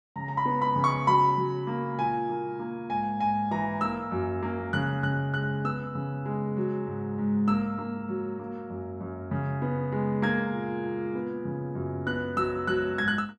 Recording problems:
none

